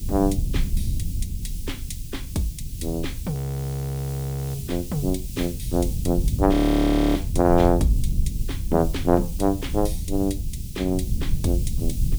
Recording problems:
hiss; SNR 16 dB
low-frequency rumble; below 90 Hz, SNR 5 dB
audio freezing; at 3.5 s for 1 s and at 6.5 s for 0.5 s

